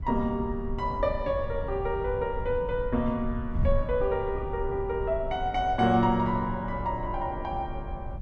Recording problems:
wind on the microphone; below 84 Hz, SNR 8 dB

